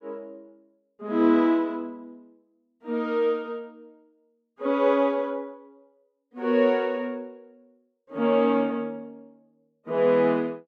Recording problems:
none

